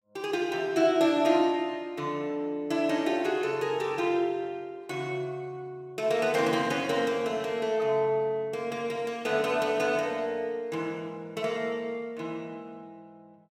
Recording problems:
none

